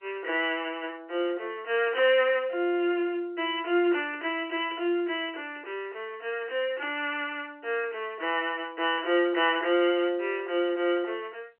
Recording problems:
telephone audio; 300 Hz to 3.1 kHz, G.711

